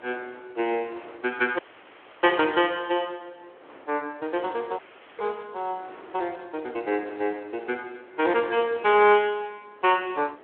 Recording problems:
telephone audio; 260 Hz to 3.4 kHz, Speex
wind noise; below 1.4 kHz, SNR 23 dB
dropout; at 1.5 s for 0.5 s and at 5 s

